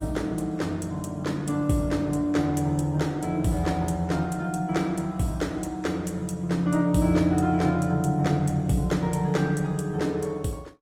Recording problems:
codec artefacts; Opus, log-spectral distance 2 dB, nothing above 19 kHz

